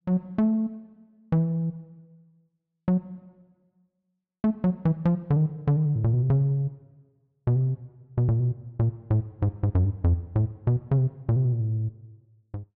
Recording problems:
none

